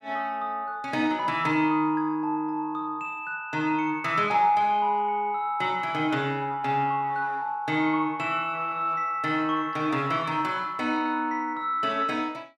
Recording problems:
none

